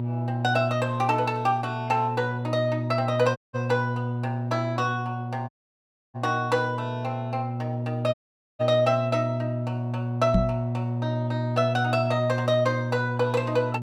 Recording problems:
electrical hum; 60 Hz, harmonics up to 600 Hz, SNR 3 dB
audio cutting out; at 3.5 s, at 5.5 s for 0.5 s and at 8 s
microphone bump; at 10 s; peak +7 dB vs average level

